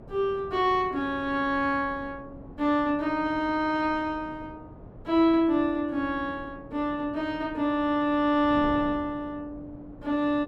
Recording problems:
wind on the microphone; below 410 Hz, SNR 19 dB

